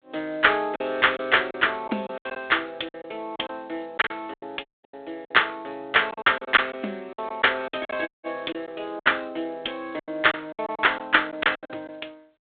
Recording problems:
phone line; 260 Hz to 3.6 kHz, G.726
packet loss; 12% of the sound replaced, filled with silence
dropout; at 4.5 s and at 8 s

